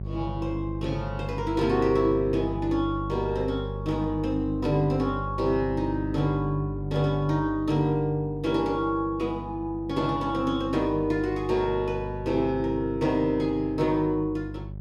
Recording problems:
hum; 50 Hz, harmonics up to 550 Hz, SNR 9 dB

